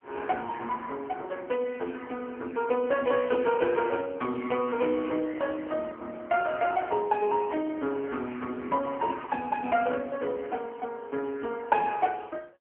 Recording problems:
telephone audio; 240 Hz to 3.3 kHz, AMR-NB
microphone handling noise; from 5 to 8 s; peak -13 dB vs average level

